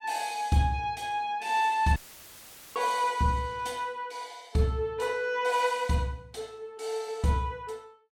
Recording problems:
dropout; at 2 s for 1 s; filled with static

